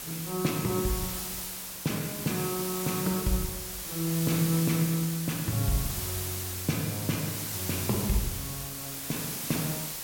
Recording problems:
hiss; slope 0 dB per octave, SNR 2 dB

